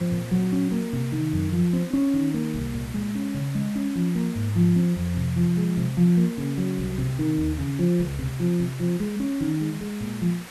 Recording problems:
hiss; SNR 16 dB

